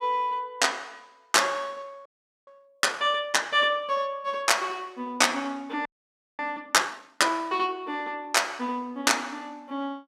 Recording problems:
audio freezing; at 2 s and at 6 s for 0.5 s

